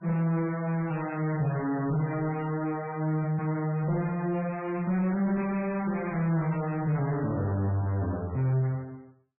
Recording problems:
lossy codec; MP3, log-spectral distance 2 dB, nothing above 2.6 kHz
distortion; soft clipping, signal-to-distortion ratio 11 dB

